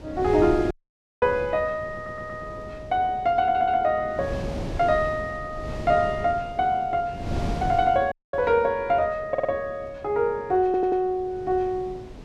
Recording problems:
wind on the microphone; below 350 Hz, SNR 12 dB
dropout; at 0.5 s for 0.5 s and at 8 s
audio stuttering; 4 times, first at 2 s

